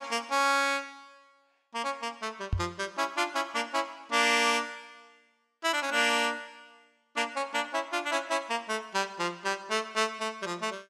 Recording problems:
microphone bump; at 2.5 s; peak +3 dB vs average level

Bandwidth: 14.5 kHz